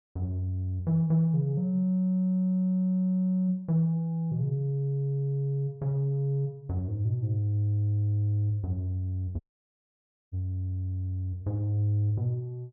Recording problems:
dropout; at 9.5 s for 1 s

